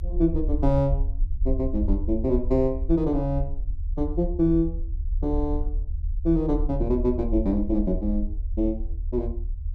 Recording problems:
rumble; below 64 Hz, strongest tone 34 Hz, SNR 5 dB

